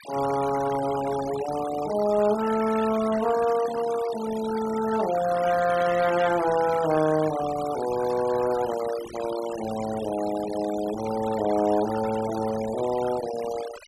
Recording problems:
noise reduction artefacts; signal-to-artefact ratio 12 dB

